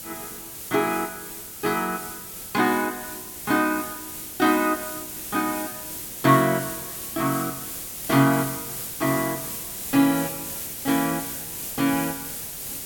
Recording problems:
hiss; SNR 8 dB

